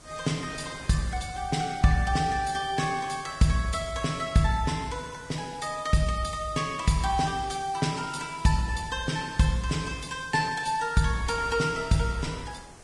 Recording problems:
lossy codec; Vorbis, log-spectral distance 5 dB, nothing above 10.1 kHz
hiss; SNR 24 dB
wind noise; below 1.1 kHz, SNR 21 dB

